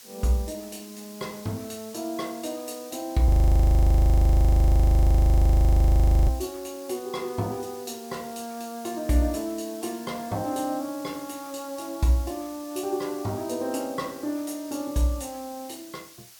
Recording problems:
hiss; slope +2 dB per octave, SNR 19 dB
audio freezing; at 3.5 s for 3 s

